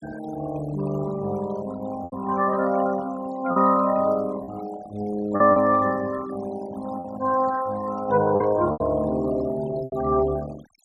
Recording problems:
denoising artefacts; signal-to-artefact ratio 17 dB
lost packets; 5% of the sound replaced, filled with repeated pitch periods

